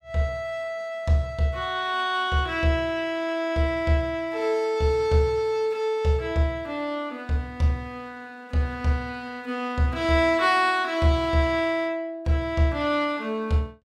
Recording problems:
none

